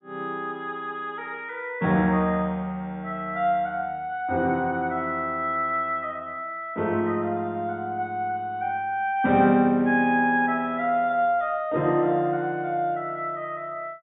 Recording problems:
treble cut off; nothing above 4 kHz

